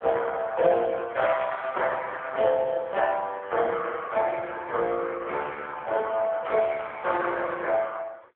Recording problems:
telephone audio; 370 Hz to 3.4 kHz, AMR-NB

